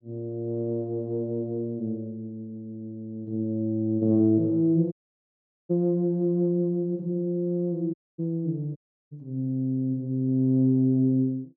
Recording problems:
dropout; at 5 s for 1 s, at 8 s and at 9 s

